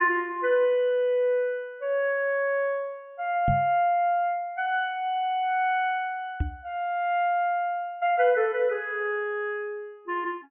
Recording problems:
low-pass filter; nothing above 3.3 kHz
microphone thump; at 3.5 s and at 6.5 s; peak +2 dB vs average level

